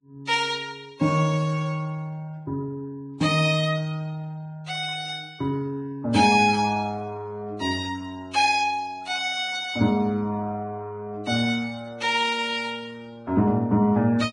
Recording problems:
lossy compression; Vorbis, log-spectral distance 3 dB, nothing above 10.1 kHz

